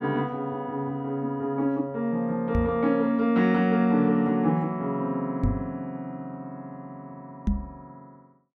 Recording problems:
microphone thump; at 2.5 s, at 5.5 s and at 7.5 s; peak +4 dB vs average level

